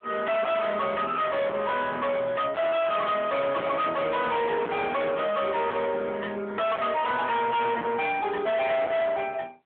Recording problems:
phone line; 260 Hz to 3.8 kHz, AMR-NB
distorted audio; hard clipping, signal-to-distortion ratio 6 dB

